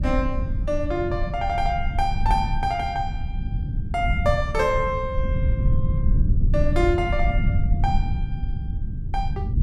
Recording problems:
rumble; below 98 Hz, SNR 0 dB

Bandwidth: 14.5 kHz